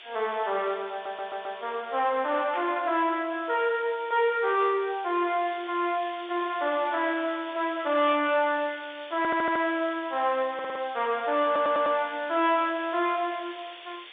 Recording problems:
telephone audio; 340 Hz to 3.7 kHz, G.711
distortion; soft clipping, signal-to-distortion ratio 12 dB
background hiss; SNR 18 dB
audio stuttering; 4 times, first at 1 s
burst of static; at 2.5 s and at 8 s; peak -9 dB vs average level

